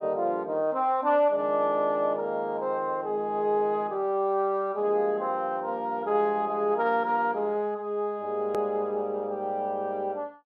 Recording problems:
click at an edit; at 8.5 s

